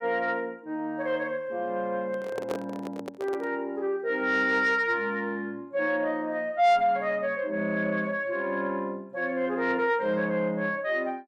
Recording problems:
distorted audio; soft clipping, signal-to-distortion ratio 11 dB
handling noise; from 2 to 3.5 s; peak -1 dB vs average level

